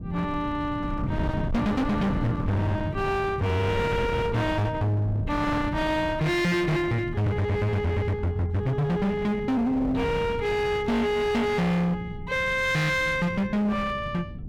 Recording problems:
distorted audio; hard clipping, signal-to-distortion ratio 8 dB
wind noise; below 210 Hz, SNR 8 dB

